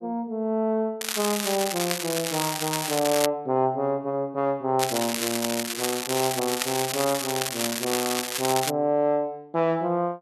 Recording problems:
crackling; from 1 to 3.5 s and from 5 to 8.5 s; loose cable, SNR 2 dB

